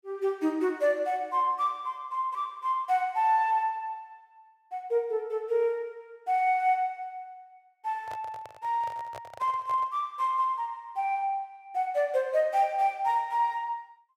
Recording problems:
microphone handling noise; from 8 to 10 s; peak -10 dB vs average level

